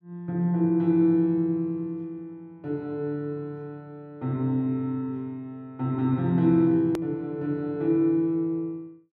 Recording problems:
hard cut with a click; at 7 s

